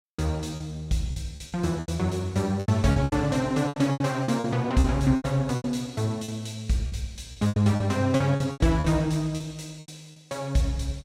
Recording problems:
lost packets; 14% of the sound replaced, filled with repeated pitch periods

